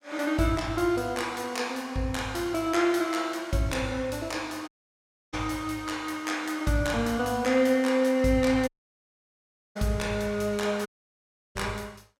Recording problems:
audio cutting out; at 4.5 s for 0.5 s, at 8.5 s for 1 s and at 11 s for 0.5 s

